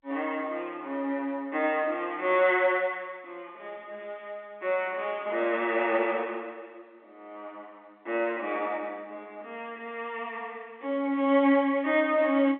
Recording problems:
phone line; 240 Hz to 3.6 kHz, G.711

